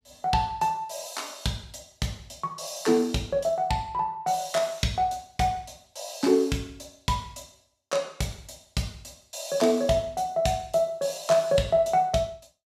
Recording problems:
none

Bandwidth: 15 kHz